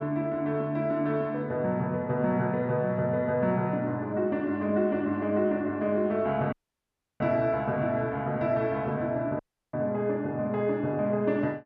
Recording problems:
dropout; at 6.5 s for 0.5 s and at 9.5 s

